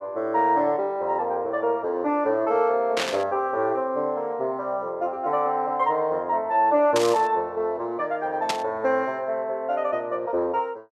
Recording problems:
burst of static; at 3 s, at 7 s and at 8.5 s; peak +2 dB vs average level

